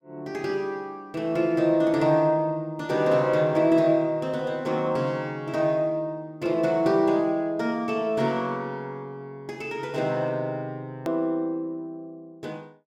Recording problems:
click at an edit; at 11 s

